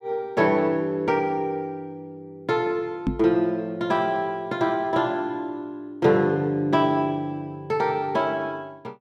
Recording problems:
knock on the microphone; at 3 s; peak +4 dB vs average level

